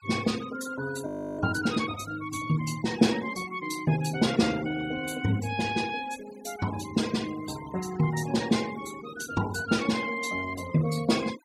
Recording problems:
noise reduction artefacts; signal-to-artefact ratio 16 dB
frozen audio; at 1 s

